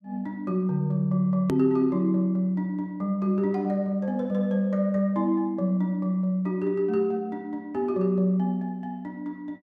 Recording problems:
click at an edit; at 1.5 s

